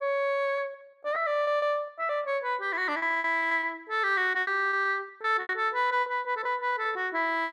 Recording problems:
packet loss; 12% of the sound replaced, filled with repeated pitch periods

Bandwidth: 14 kHz